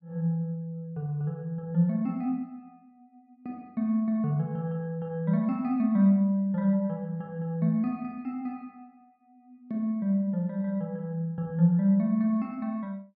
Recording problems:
none

